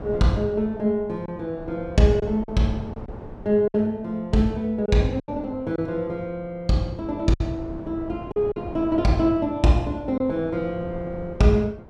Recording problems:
wind noise; below 440 Hz, SNR 16 dB
packet loss; 4% of the sound replaced, filled with silence

